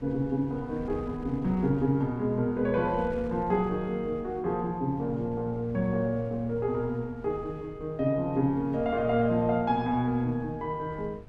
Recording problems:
wind noise; below 190 Hz, SNR 18 dB

